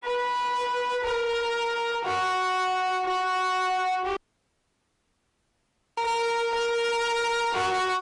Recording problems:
codec artefacts; AAC, log-spectral distance 2 dB, nothing above 10.4 kHz
distorted audio; soft clipping, signal-to-distortion ratio 7 dB
dropout; at 4 s for 2 s

